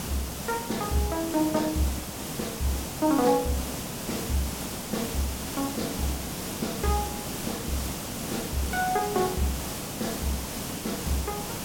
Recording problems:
background hiss; SNR 3 dB

